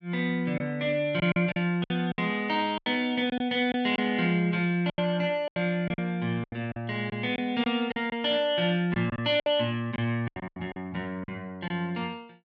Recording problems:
packet loss; 10% of the sound replaced, filled with silence

